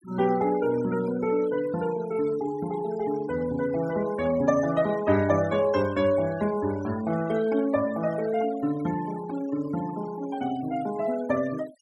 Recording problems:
noise reduction artefacts; signal-to-artefact ratio 18 dB

